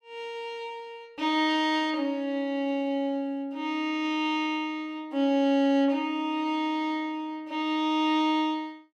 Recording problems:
none

